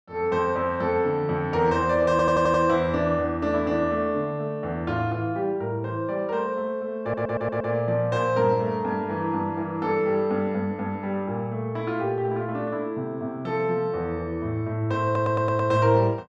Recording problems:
audio stuttering; at 2 s, at 7 s and at 15 s

